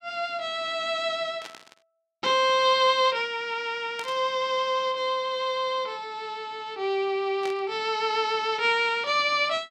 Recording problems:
burst of static; at 1.5 s, at 4 s and at 7.5 s; peak -9 dB vs average level

